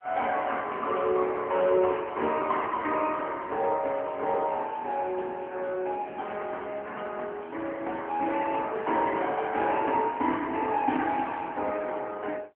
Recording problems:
telephone audio; 260 Hz to 3.1 kHz, AMR-NB

